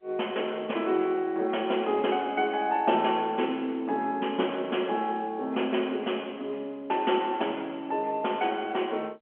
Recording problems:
phone line; 240 Hz to 3.3 kHz, G.711

